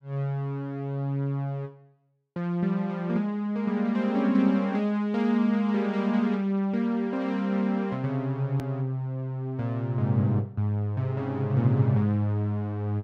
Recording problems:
hard cut with a click; at 8.5 s

